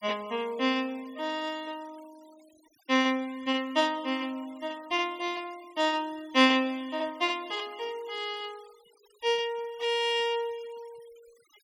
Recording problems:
noise reduction artefacts; signal-to-artefact ratio 24 dB

